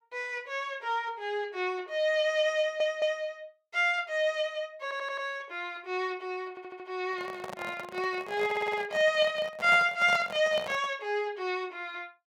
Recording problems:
audio stuttering; 4 times, first at 2.5 s
microphone handling noise; from 7 to 11 s; peak -3 dB vs average level

